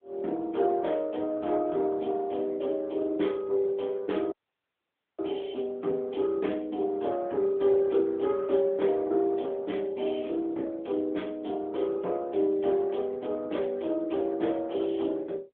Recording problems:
phone line; 220 Hz to 3.5 kHz, AMR-NB
dropout; at 4.5 s for 1 s

